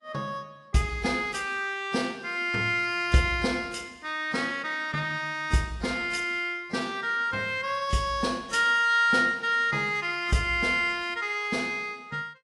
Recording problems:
lossy compression; AAC, log-spectral distance 2 dB, nothing above 10.7 kHz

